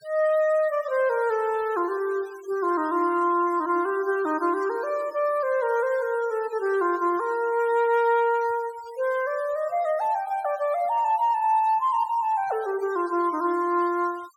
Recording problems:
noise reduction artefacts; signal-to-artefact ratio 24 dB

